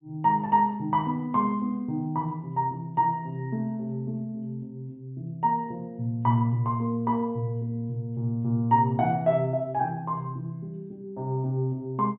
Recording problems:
low-pass filter; nothing above 4 kHz

